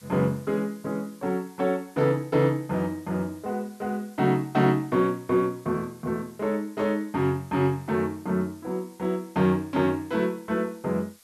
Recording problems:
hiss; slope +2 dB per octave, SNR 27 dB

